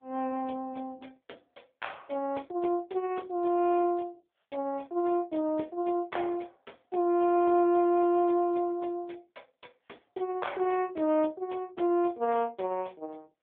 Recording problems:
telephone audio; 280 Hz to 3.1 kHz, AMR-NB

